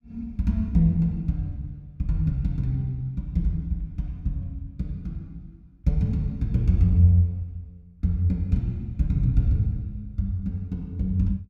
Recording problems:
none

